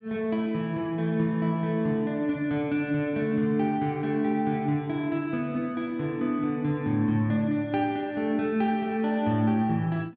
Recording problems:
none

